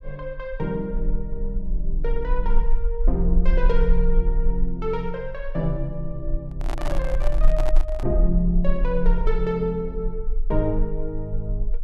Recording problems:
rumble; below 36 Hz, strongest tone 22 Hz, SNR -1 dB
microphone handling noise; from 6.5 to 8 s; peak -1 dB vs average level

